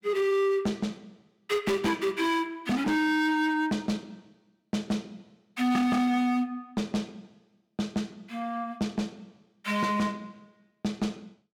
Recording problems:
distortion; hard clipping, signal-to-distortion ratio 7 dB

